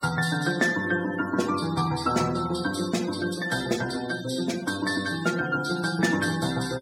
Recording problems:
denoising artefacts; signal-to-artefact ratio 13 dB

